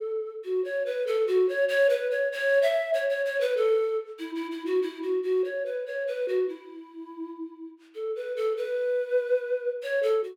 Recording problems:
none

